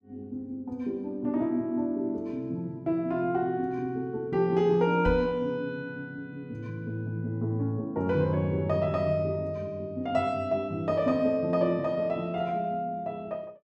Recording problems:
knock on the microphone; at 5 s; peak 0 dB vs average level

